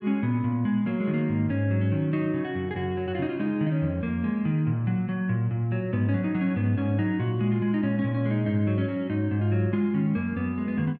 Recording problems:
none

